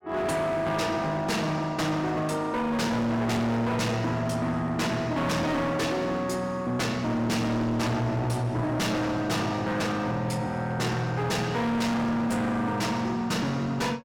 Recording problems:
distorted audio; hard clipping, uneven, signal-to-distortion ratio 7 dB

